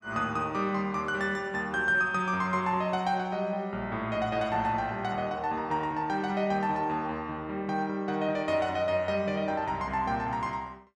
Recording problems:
none

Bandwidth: 12 kHz